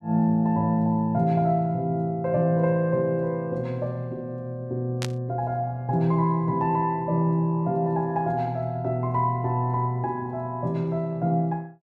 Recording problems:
burst of static; at 5 s; peak -3 dB vs average level

